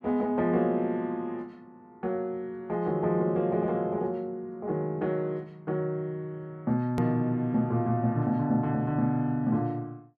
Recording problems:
edit click; at 7 s

